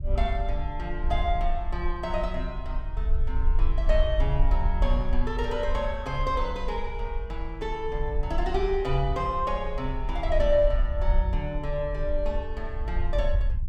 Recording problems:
low-frequency rumble; below 50 Hz, SNR 1 dB

